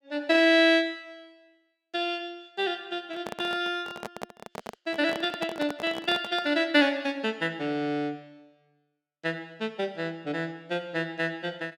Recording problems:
microphone handling noise; from 3 to 6.5 s; peak -3 dB vs average level

